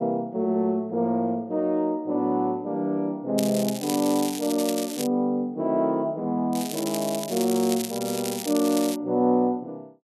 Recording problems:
crackling; from 3.5 to 5 s and from 6.5 to 9 s; loose cable, SNR 9 dB

